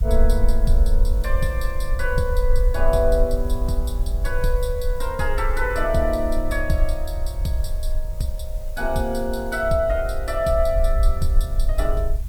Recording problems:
background hiss; SNR 23 dB
low-frequency rumble; below 48 Hz, strongest tone 20 Hz, SNR 1 dB

